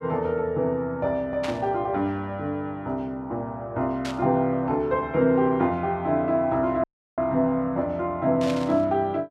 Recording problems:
burst of static; at 1.5 s, at 4 s and at 8.5 s; peak -5 dB vs average level
audio cutting out; at 7 s

